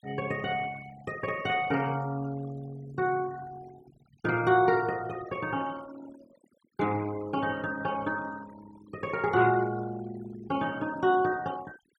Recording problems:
denoising artefacts; signal-to-artefact ratio 18 dB

